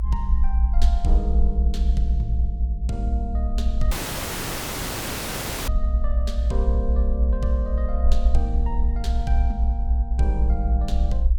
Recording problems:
low-frequency rumble; below 60 Hz, SNR -8 dB
audio cutting out; at 4 s for 2 s

